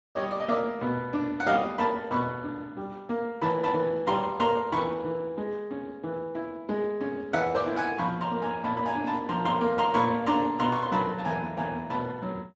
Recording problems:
codec artefacts; Speex, log-spectral distance 3 dB, nothing above 7.3 kHz

